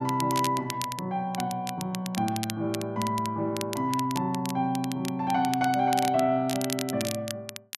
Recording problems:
crackle; vinyl, SNR 10 dB

